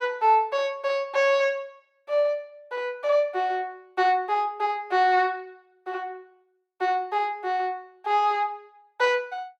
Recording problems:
none

